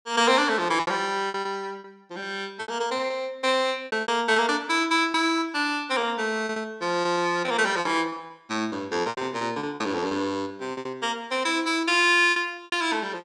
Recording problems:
packet loss; 13% of the sound replaced, filled with repeated pitch periods

